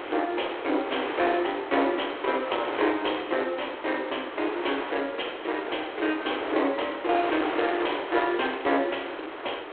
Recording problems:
phone line; 280 Hz to 3.4 kHz, G.726
distortion; hard clipping, signal-to-distortion ratio 11 dB
wind on the microphone; below 1.7 kHz, SNR 7 dB

